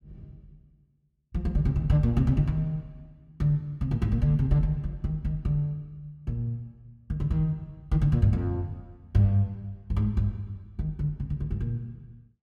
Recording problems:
none

